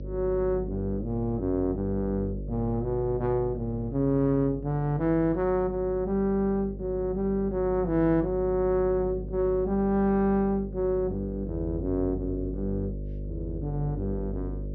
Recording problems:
treble missing; nothing above 6.1 kHz
hum; 50 Hz, harmonics up to 600 Hz, SNR 10 dB

